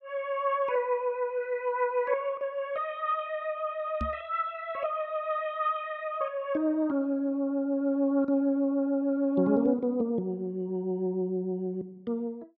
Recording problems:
knock on the microphone; at 4 s; peak -1 dB vs average level

